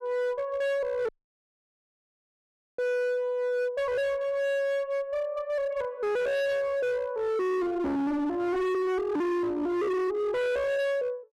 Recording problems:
distortion; hard clipping, signal-to-distortion ratio 7 dB
dropout; at 1 s for 1.5 s

